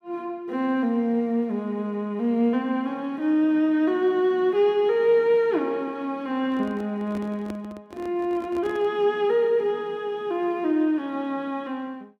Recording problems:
handling noise; from 6.5 to 9 s; peak -9 dB vs average level

